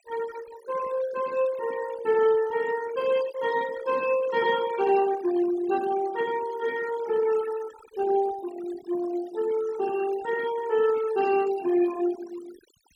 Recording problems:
denoising artefacts; signal-to-artefact ratio 16 dB

